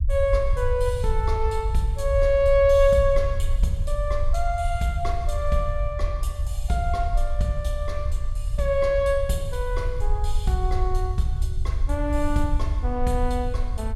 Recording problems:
low-frequency rumble; below 66 Hz, SNR 3 dB

